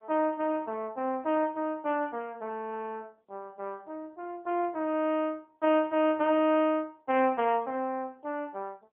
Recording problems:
phone line; 220 Hz to 3.4 kHz, AMR-NB

